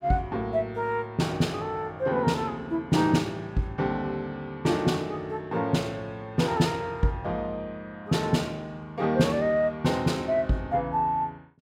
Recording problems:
none

